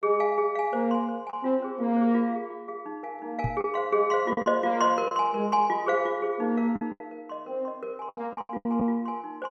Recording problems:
packet loss; 6% of the sound replaced, filled with the last packet
microphone bump; at 3.5 s; peak +1 dB vs average level

